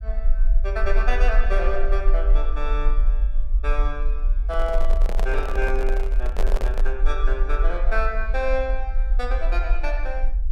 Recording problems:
rumble; below 40 Hz, strongest tone 28 Hz, SNR -4 dB
microphone handling noise; from 4.5 to 7 s; peak +2 dB vs average level

